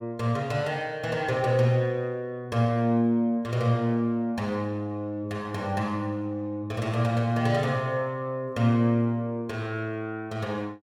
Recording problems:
none

